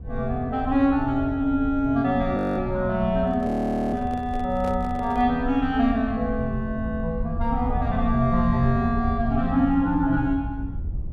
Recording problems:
rumble; below 92 Hz, SNR 9 dB
frozen audio; at 2.5 s and at 3.5 s
microphone handling noise; from 3.5 to 5 s; peak -9 dB vs average level

